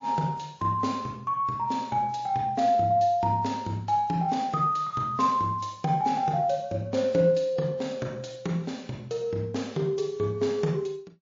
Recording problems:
codec artefacts; MP3, log-spectral distance 2 dB

